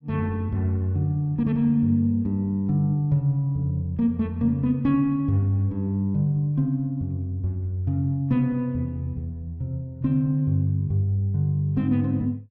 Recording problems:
none

